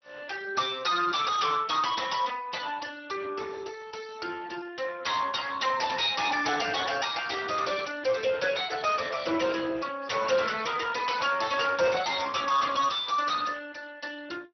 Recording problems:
low-pass filter; nothing above 5.9 kHz
lossy compression; Speex, log-spectral distance 6 dB
distortion; soft clipping, signal-to-distortion ratio 11 dB

